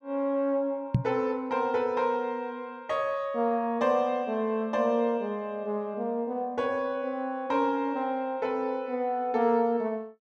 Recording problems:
microphone bump; at 1 s; peak +8 dB vs average level

